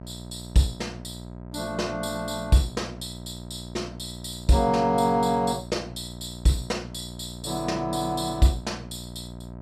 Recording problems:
hum; 60 Hz, harmonics up to 1.3 kHz, SNR 13 dB

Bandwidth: 14.5 kHz